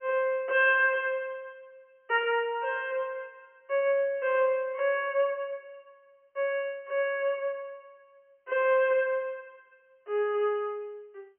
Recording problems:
telephone audio; 320 Hz to 3.2 kHz, G.711

